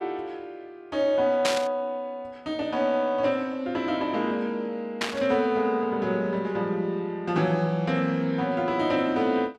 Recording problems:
burst of static; at 1.5 s and at 5 s; peak +4 dB vs average level

